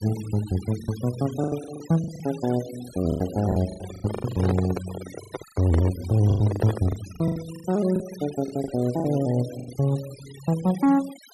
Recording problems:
noise reduction artefacts; signal-to-artefact ratio 18 dB
lost packets; 12% of the sound replaced, filled with the last packet
microphone handling noise; from 3.5 to 7 s; peak +1 dB vs average level

